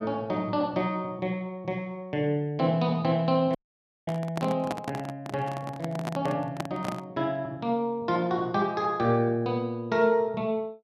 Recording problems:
handling noise; from 3.5 to 7 s; peak 0 dB vs average level
dropout; at 3.5 s for 0.5 s

